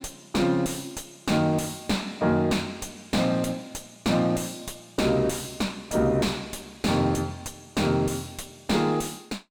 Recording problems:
distortion; soft clipping, signal-to-distortion ratio 5 dB

